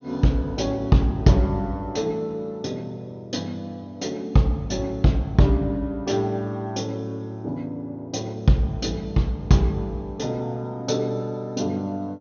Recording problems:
treble cut off; nothing above 6.6 kHz

